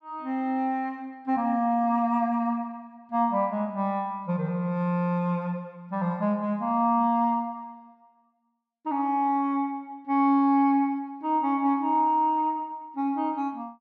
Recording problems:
none

